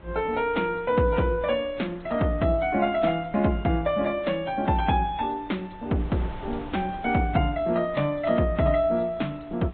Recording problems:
low-pass filter; nothing above 4 kHz
codec artefacts; MP3, then AAC, log-spectral distance 2 dB
wind on the microphone; below 630 Hz, SNR 21 dB

